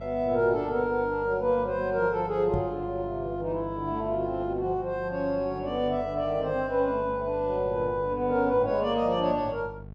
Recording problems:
hum; 50 Hz, harmonics up to 700 Hz, SNR 16 dB
microphone thump; at 2.5 s; peak 0 dB vs average level

